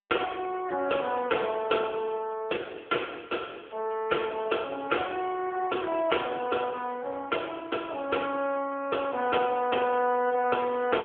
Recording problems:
telephone audio; 280 Hz to 2.6 kHz, AMR-NB

